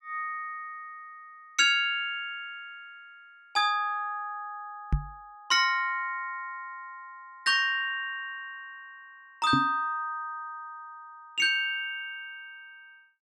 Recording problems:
microphone bump; at 5 s and at 9.5 s; peak +5 dB vs average level

